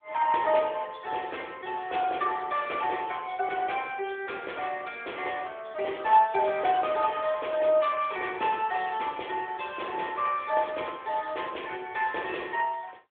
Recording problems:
telephone audio; 300 Hz to 3.4 kHz, AMR-NB

